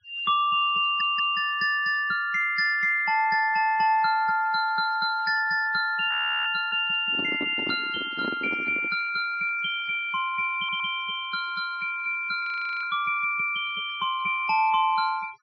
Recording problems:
treble missing; nothing above 5.7 kHz
denoising artefacts; signal-to-artefact ratio 25 dB
stutter; at 1 s and at 11 s
audio freezing; at 6 s and at 12 s
microphone handling noise; from 7 to 9 s; peak -4 dB vs average level

